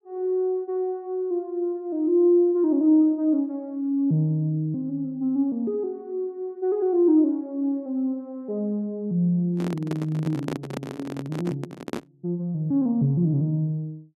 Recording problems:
microphone handling noise; from 9.5 to 12 s; peak -2 dB vs average level

